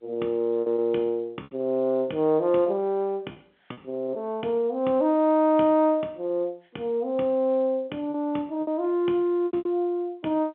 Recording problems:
telephone audio; 220 Hz to 3.4 kHz, G.711
lost packets; 6% of the sound replaced, filled with repeated pitch periods

